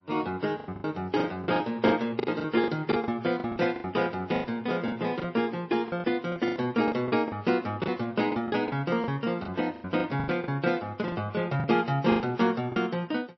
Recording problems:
codec artefacts; MP3, log-spectral distance 2 dB, nothing above 5.7 kHz
lost packets; 14% of the sound replaced, filled with the last packet

